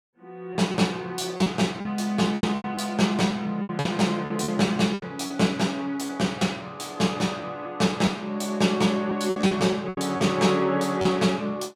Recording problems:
lost packets; 9% of the sound replaced, filled with repeated pitch periods

